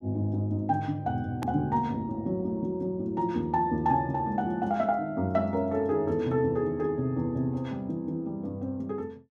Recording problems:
edit click; at 1.5 s

